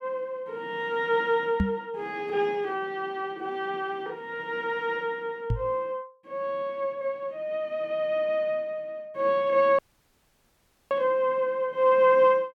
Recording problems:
knock on the microphone; at 1.5 s and at 5.5 s; peak +5 dB vs average level
dropout; at 10 s for 1 s

